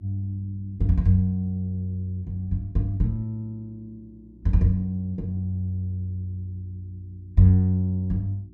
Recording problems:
hum; 60 Hz, harmonics up to 360 Hz, SNR 25 dB

